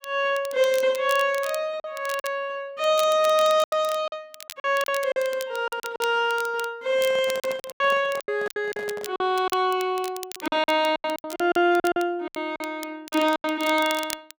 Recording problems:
crackle; vinyl, SNR 16 dB
lost packets; 11% of the sound replaced, filled with silence
handling noise; from 7 to 9 s; peak -11 dB vs average level

